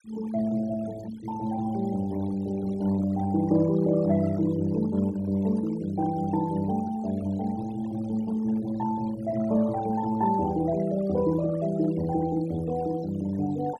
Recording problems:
denoising artefacts; signal-to-artefact ratio 19 dB

